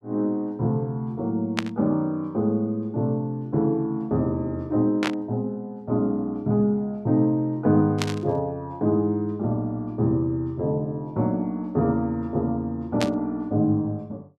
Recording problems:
static burst; 4 times, first at 1.5 s; peak +3 dB vs average level

